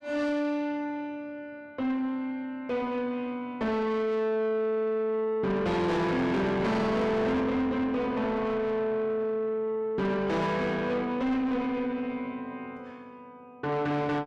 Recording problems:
distortion; soft clipping, signal-to-distortion ratio 6 dB

